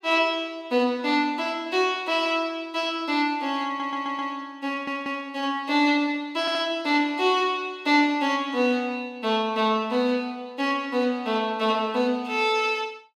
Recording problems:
stutter; at 3.5 s, at 4.5 s and at 6.5 s

